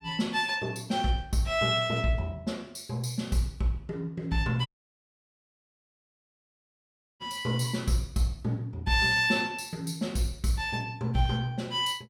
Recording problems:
audio cutting out; at 4.5 s for 2.5 s

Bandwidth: 17 kHz